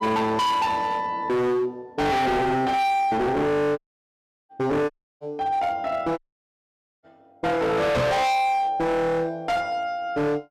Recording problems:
distortion; hard clipping, signal-to-distortion ratio 6 dB
dropout; at 4 s for 0.5 s, at 5 s and at 6 s for 1 s
microphone bump; at 8 s; peak +6 dB vs average level

